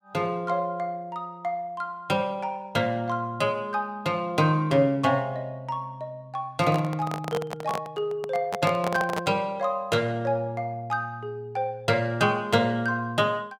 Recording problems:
handling noise; from 6.5 to 9.5 s; peak +1 dB vs average level

